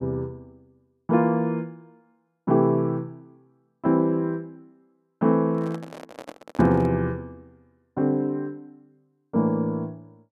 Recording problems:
handling noise; from 5.5 to 7 s; peak -9 dB vs average level

